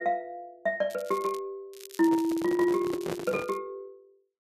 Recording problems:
crackle; at 1 s and from 1.5 to 3.5 s; loose cable, SNR 20 dB
microphone handling noise; from 2 to 3.5 s; peak -1 dB vs average level

